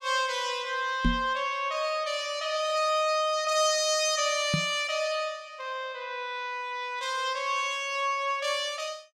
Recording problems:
knock on the microphone; at 1 s and at 4.5 s; peak +5 dB vs average level

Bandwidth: 15 kHz